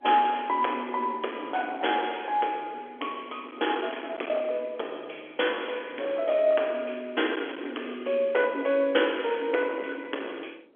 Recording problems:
phone line; 260 Hz to 3.4 kHz, G.711
distorted audio; hard clipping, signal-to-distortion ratio 15 dB
wind on the microphone; below 1.2 kHz, SNR 15 dB

